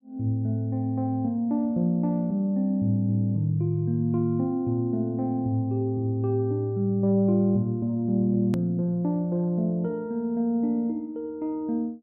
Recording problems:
hard cut with a click; at 8.5 s

